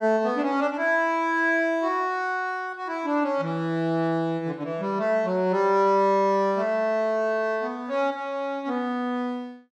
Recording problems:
none

